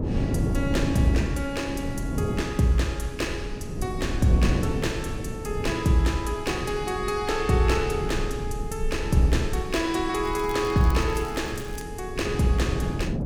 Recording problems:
low-frequency rumble; below 68 Hz, SNR 13 dB
wind noise; below 270 Hz, SNR 6 dB
crackling; from 10 to 12 s; loose cable, SNR 21 dB

